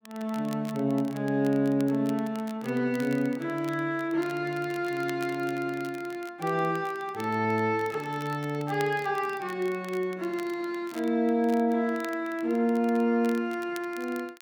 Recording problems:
crackle; vinyl, SNR 21 dB

